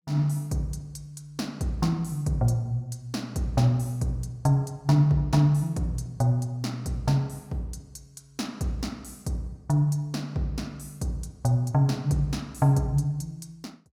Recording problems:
none

